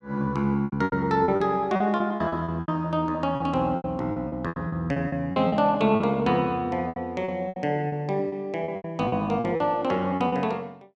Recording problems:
lost packets; 15% of the sound replaced, filled with repeated pitch periods

